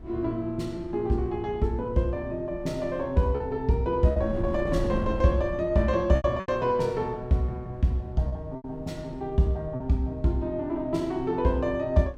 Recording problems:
wind on the microphone; below 190 Hz, SNR 14 dB
packet loss; 3% of the sound replaced, filled with repeated pitch periods

